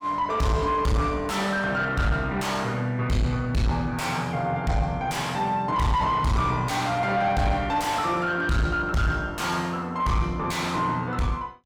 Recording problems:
distortion; soft clipping, signal-to-distortion ratio 6 dB

